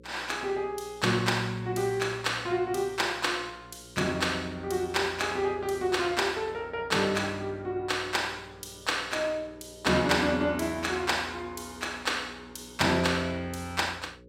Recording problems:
hum; 60 Hz, harmonics up to 540 Hz, SNR 24 dB

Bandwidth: 16 kHz